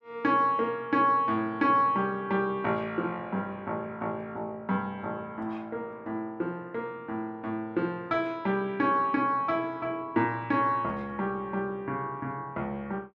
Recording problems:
none

